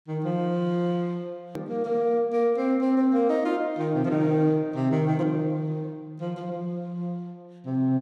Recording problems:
click at an edit; at 1.5 s

